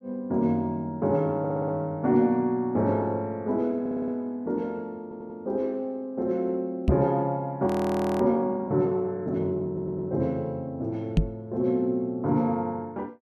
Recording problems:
stutter; 4 times, first at 1.5 s
microphone bump; at 7 s and at 11 s; peak +9 dB vs average level
audio freezing; at 7.5 s for 0.5 s

